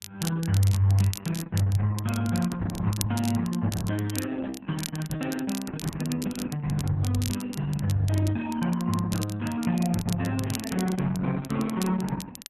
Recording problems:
lossy codec; MP3, then Opus, log-spectral distance 3 dB
crackling; vinyl, SNR 12 dB

